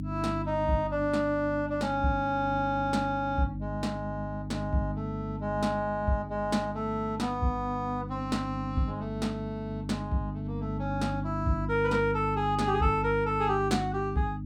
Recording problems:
mains hum; 50 Hz, harmonics up to 300 Hz, SNR 6 dB

